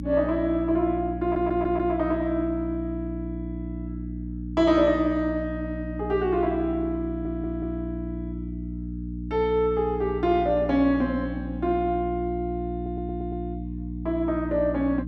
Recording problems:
electrical hum; 60 Hz, harmonics up to 300 Hz, SNR 7 dB
stutter; at 1 s, at 7 s and at 13 s

